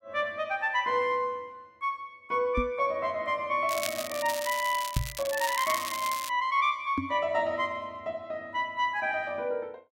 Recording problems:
microphone thump; at 2.5 s, at 5 s and at 7 s; peak +4 dB vs average level
crackle; from 3.5 to 6.5 s; loose cable, SNR 7 dB

